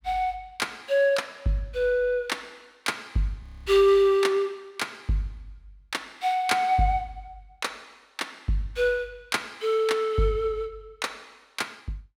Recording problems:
audio freezing; at 3.5 s

